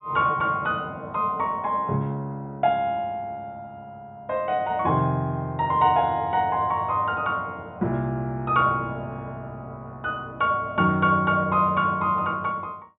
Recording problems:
treble missing; nothing above 4 kHz

